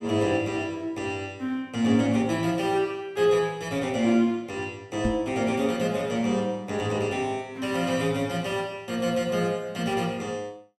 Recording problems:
knock on the microphone; at 5 s; peak +4 dB vs average level

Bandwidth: 16 kHz